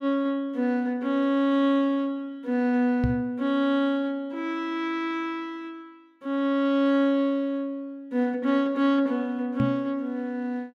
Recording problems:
knock on the microphone; at 3 s and at 9.5 s; peak +3 dB vs average level

